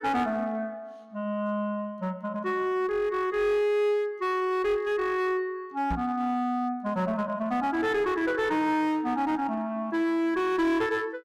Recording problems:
distortion; hard clipping, uneven, signal-to-distortion ratio 11 dB
microphone bump; at 6 s; peak -1 dB vs average level

